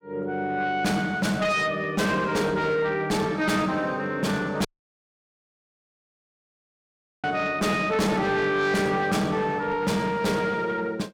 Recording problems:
distortion; soft clipping, signal-to-distortion ratio 8 dB
audio cutting out; at 4.5 s for 2.5 s

